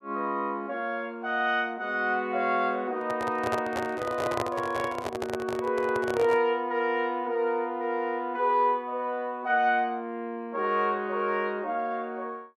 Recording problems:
handling noise; from 3 to 6.5 s; peak +2 dB vs average level

